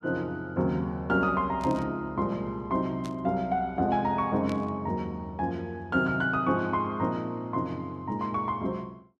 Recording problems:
burst of static; at 1.5 s, at 3 s and at 4.5 s; peak -11 dB vs average level

